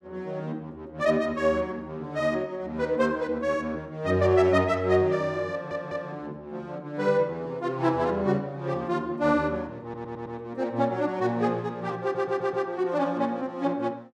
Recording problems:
audio stuttering; at 5.5 s, at 10 s and at 12 s

